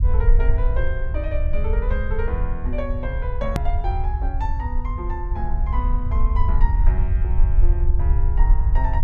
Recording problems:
low-frequency rumble; below 60 Hz, SNR -8 dB
click at an edit; at 3.5 s

